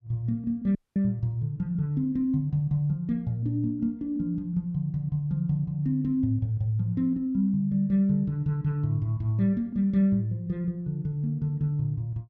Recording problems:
dropout; at 1 s

